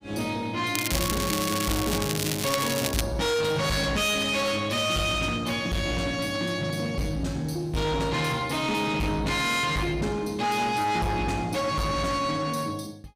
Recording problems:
distorted audio; soft clipping, signal-to-distortion ratio 7 dB
crackling; from 0.5 to 3 s; loose cable, SNR 3 dB

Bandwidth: 15.5 kHz